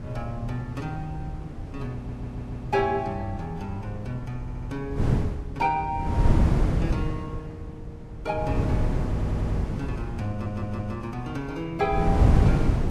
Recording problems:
lossy codec; Vorbis, log-spectral distance 2 dB, nothing above 13.1 kHz
wind on the microphone; below 180 Hz, SNR -3 dB
stutter; 4 times, first at 2 s

